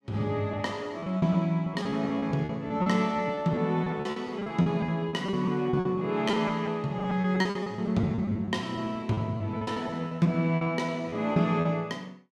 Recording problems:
lost packets; 15% of the sound replaced, filled with repeated pitch periods

